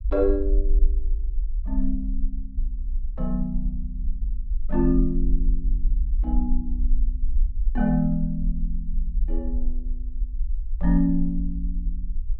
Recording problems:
rumble; below 44 Hz, SNR 1 dB

